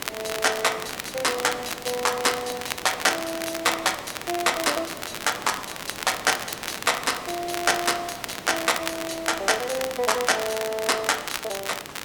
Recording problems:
hiss; slope -4 dB per octave, SNR 13 dB
crackle; vinyl, SNR 8 dB

